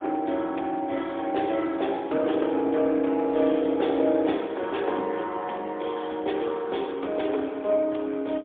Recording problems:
telephone audio; 240 Hz to 3.7 kHz, AMR-NB, then MP3

